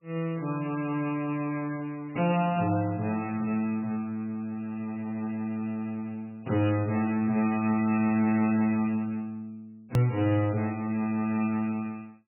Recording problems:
lossy codec; MP3, log-spectral distance 2 dB, nothing above 2.6 kHz
edit click; at 10 s

